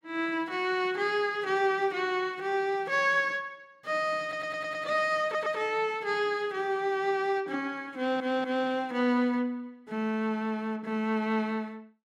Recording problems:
audio stuttering; at 4 s, at 5 s and at 8 s

